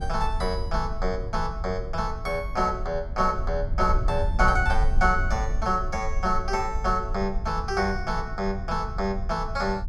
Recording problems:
low-frequency rumble; below 62 Hz, SNR 5 dB

